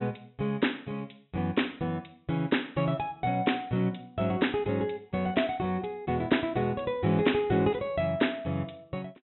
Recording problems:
low-pass filter; nothing above 3.9 kHz

